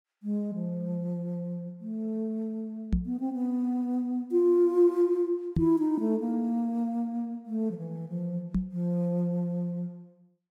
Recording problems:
microphone thump; at 3 s, at 5.5 s and at 8.5 s; peak +6 dB vs average level

